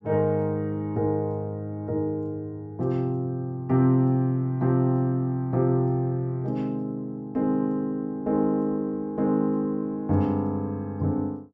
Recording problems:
none

